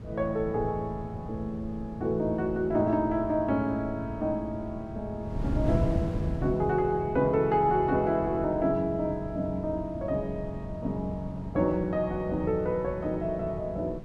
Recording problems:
wind on the microphone; below 180 Hz, SNR 9 dB

